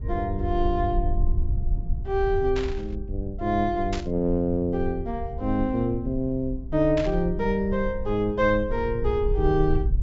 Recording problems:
low-pass filter; nothing above 8 kHz
rumble; below 64 Hz, SNR 7 dB
static burst; at 2.5 s, at 4 s and at 7 s; peak -5 dB vs average level

